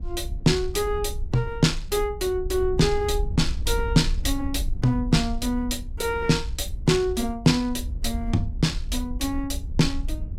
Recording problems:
wind on the microphone; below 64 Hz, SNR 8 dB

